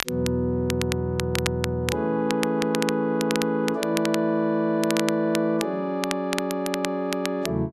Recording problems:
crackling; vinyl, SNR 8 dB

